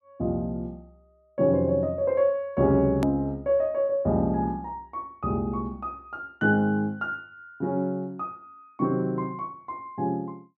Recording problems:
click at an edit; at 3 s

